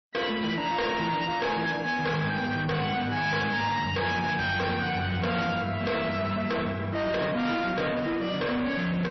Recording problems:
codec artefacts; MP3, log-spectral distance 4 dB, nothing above 5.7 kHz
distortion; soft clipping, signal-to-distortion ratio 7 dB

